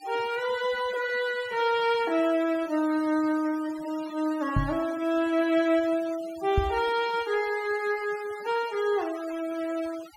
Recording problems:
noise reduction artefacts; signal-to-artefact ratio 18 dB
microphone bump; at 4.5 s and at 6.5 s; peak +5 dB vs average level

